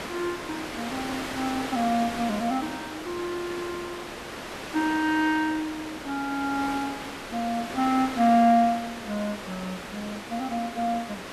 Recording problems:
background hiss; slope -4 dB per octave, SNR 8 dB

